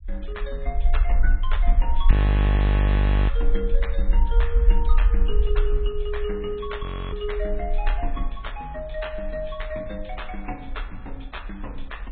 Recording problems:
low-pass filter; nothing above 3.8 kHz
codec artefacts; MP3, log-spectral distance 2 dB
low-frequency rumble; below 50 Hz, SNR -9 dB
audio freezing; at 2 s for 1 s and at 7 s

